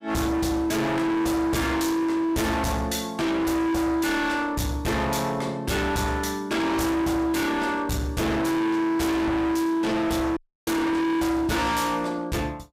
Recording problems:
distortion; hard clipping, uneven, signal-to-distortion ratio 5 dB
dropout; at 10 s

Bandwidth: 15.5 kHz